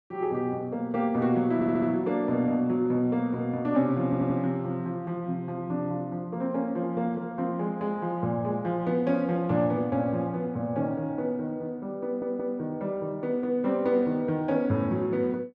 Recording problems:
stutter; at 1.5 s, at 4 s and at 12 s

